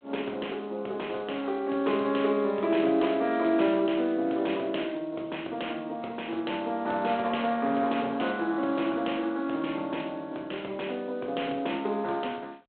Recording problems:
telephone audio; 300 Hz to 3.6 kHz, G.726

